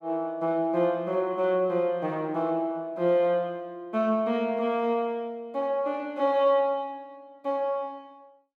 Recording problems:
none

